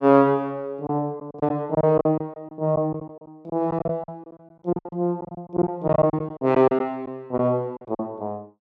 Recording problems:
lost packets; 13% of the sound replaced, filled with silence

